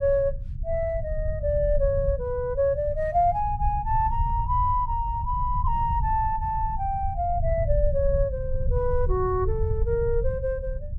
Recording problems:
low-frequency rumble; below 84 Hz, SNR 4 dB

